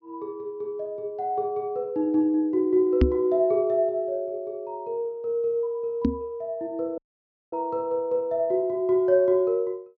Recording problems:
treble cut off; nothing above 6.7 kHz
knock on the microphone; at 3 s and at 6 s; peak +8 dB vs average level
audio cutting out; at 7 s for 0.5 s

